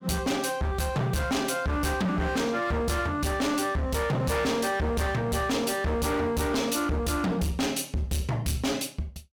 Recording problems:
distortion; hard clipping, signal-to-distortion ratio 7 dB

